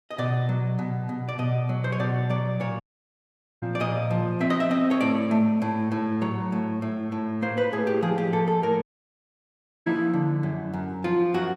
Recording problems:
audio cutting out; at 3 s for 1 s and at 9 s for 1 s

